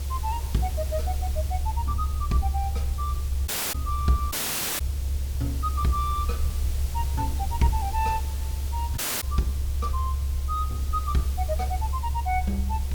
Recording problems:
hiss; SNR 11 dB
low-frequency rumble; below 70 Hz, strongest tone 68 Hz, SNR -2 dB
audio cutting out; at 3.5 s, at 4.5 s and at 9 s

